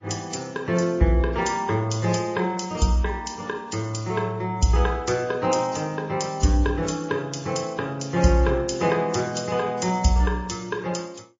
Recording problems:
lossy compression; MP3, then AAC, log-spectral distance 3 dB

